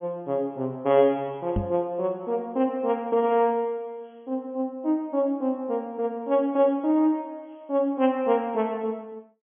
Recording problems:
low-pass filter; nothing above 3.4 kHz
microphone bump; at 1.5 s; peak +1 dB vs average level

